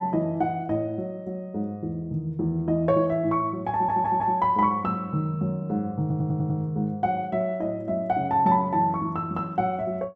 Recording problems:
audio stuttering; at 3.5 s and at 6 s

